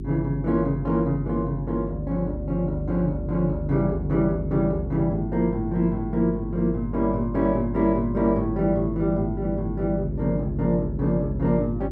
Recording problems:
hum; 50 Hz, harmonics up to 400 Hz, SNR 7 dB

